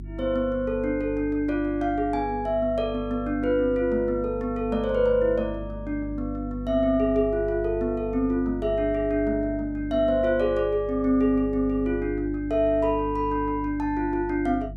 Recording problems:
hum; 50 Hz, harmonics up to 350 Hz, SNR 13 dB

